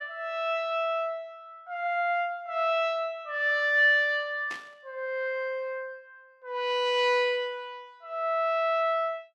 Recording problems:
burst of static; at 4.5 s; peak -9 dB vs average level

